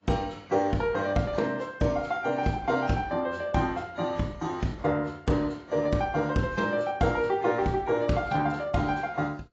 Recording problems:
lossy compression; AAC, log-spectral distance 2 dB

